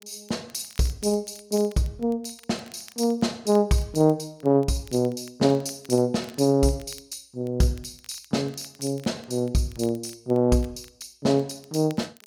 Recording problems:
crackling; vinyl, SNR 26 dB

